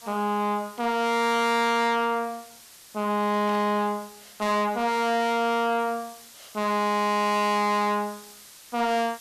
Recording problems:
distortion; soft clipping, signal-to-distortion ratio 7 dB
background hiss; slope +1 dB per octave, SNR 22 dB
static burst; at 3.5 s; peak -13 dB vs average level

